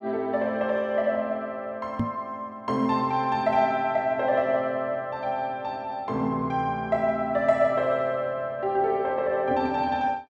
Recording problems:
microphone bump; at 2 s; peak +3 dB vs average level

